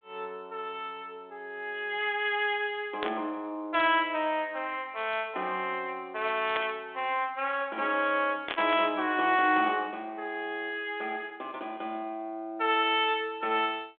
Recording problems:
phone line; 280 Hz to 3.5 kHz, G.726
static burst; at 3 s, at 6.5 s and at 8.5 s; peak +1 dB vs average level

